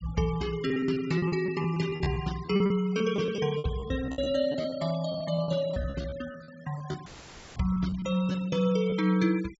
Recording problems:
treble cut off; nothing above 8 kHz
denoising artefacts; signal-to-artefact ratio 19 dB
packet loss; 15% of the sound replaced, filled with repeated pitch periods
dropout; at 7 s for 0.5 s; filled with static

